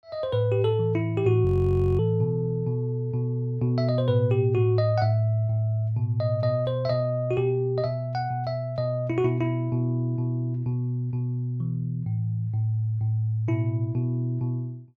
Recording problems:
audio freezing; at 1.5 s for 0.5 s

